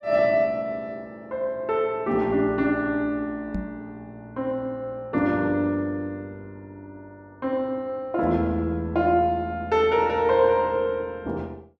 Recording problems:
knock on the microphone; at 3.5 s; peak -2 dB vs average level

